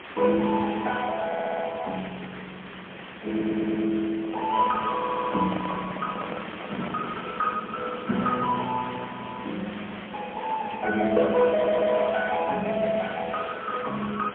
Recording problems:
telephone audio; 150 Hz to 3.4 kHz, AMR-NB, then MP3
hiss; SNR 12 dB
stutter; 4 times, first at 1.5 s
microphone handling noise; from 4 to 7 s; peak -4 dB vs average level
crackle; from 4.5 to 8.5 s; loose cable, SNR 27 dB

